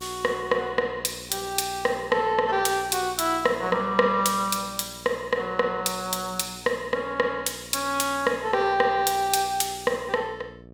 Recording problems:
hum; 60 Hz, harmonics up to 780 Hz, SNR 22 dB

